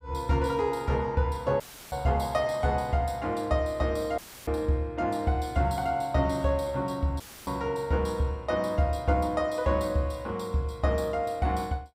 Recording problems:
dropout; at 1.5 s, at 4 s and at 7 s; filled with static

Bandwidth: 15.5 kHz